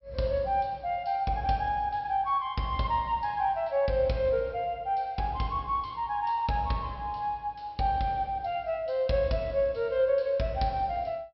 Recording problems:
treble cut off; nothing above 5.6 kHz

